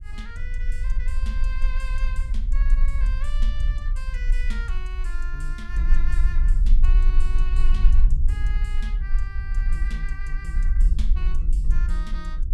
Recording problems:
rumble; below 44 Hz, strongest tone 22 Hz, SNR -14 dB

